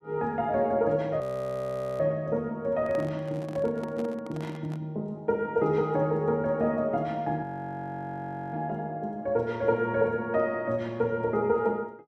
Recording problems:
frozen audio; at 1 s for 1 s and at 7.5 s for 1 s
microphone handling noise; from 3 to 5 s; peak -8 dB vs average level

